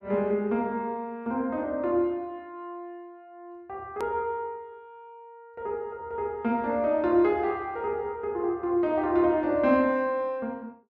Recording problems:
edit click; at 4 s

